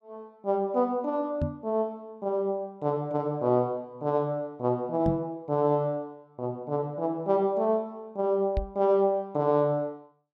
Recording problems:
microphone bump; at 1.5 s, at 5 s and at 8.5 s; peak +2 dB vs average level

